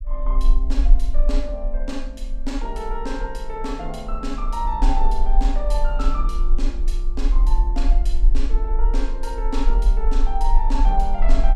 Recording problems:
low-frequency rumble; below 38 Hz, strongest tone 22 Hz, SNR -6 dB

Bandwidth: 15.5 kHz